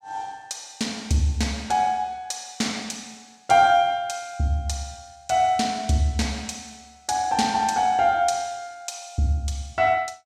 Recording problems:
none

